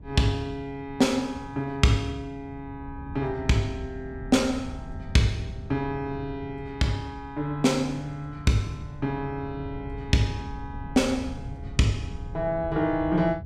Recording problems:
wind on the microphone; below 140 Hz, SNR 13 dB

